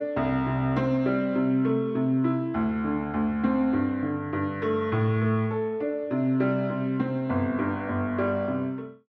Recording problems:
none

